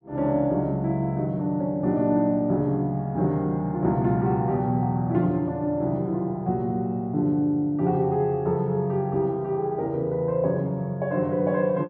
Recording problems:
none

